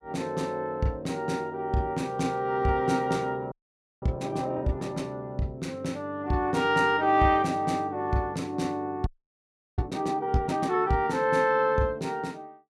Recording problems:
frozen audio; at 3.5 s and at 9 s for 0.5 s

